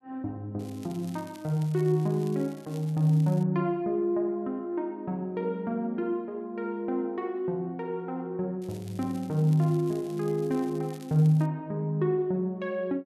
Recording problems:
crackling; from 0.5 to 3.5 s and from 8.5 to 11 s; loose cable, SNR 24 dB

